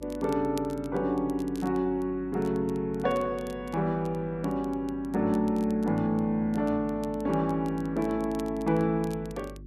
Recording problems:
hum; 50 Hz, harmonics up to 400 Hz, SNR 19 dB
crackle; vinyl, SNR 25 dB

